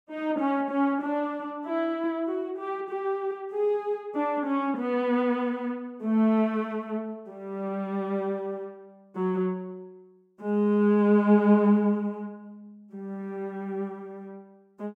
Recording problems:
none

